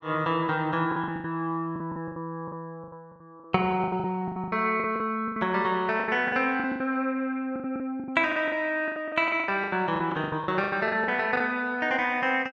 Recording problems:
packet loss; 18% of the sound replaced, filled with the last packet

